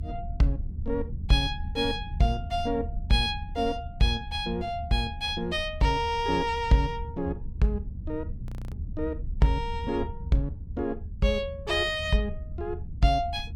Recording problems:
rumble; below 84 Hz, SNR 9 dB
frozen audio; at 8.5 s

